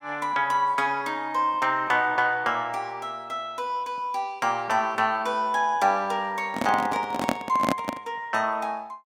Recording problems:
microphone handling noise; from 6.5 to 8 s; peak +5 dB vs average level

